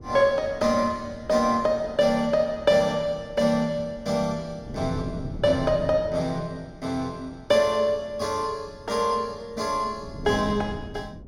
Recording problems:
wind on the microphone; below 260 Hz, SNR 16 dB

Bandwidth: 16 kHz